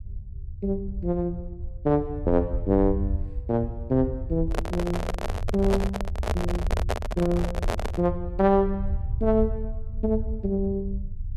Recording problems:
rumble; below 80 Hz, SNR 6 dB
handling noise; from 4.5 to 8 s; peak +3 dB vs average level

